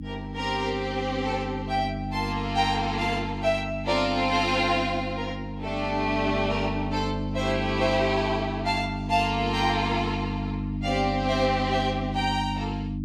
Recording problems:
hum; 50 Hz, harmonics up to 300 Hz, SNR 5 dB

